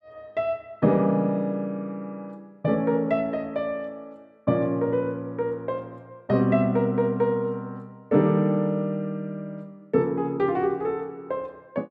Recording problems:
none

